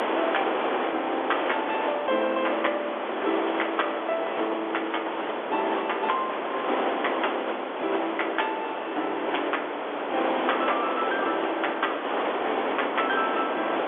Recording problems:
phone line; 280 Hz to 3.5 kHz, G.711
hiss; SNR 0 dB
wind noise; below 770 Hz, SNR 20 dB

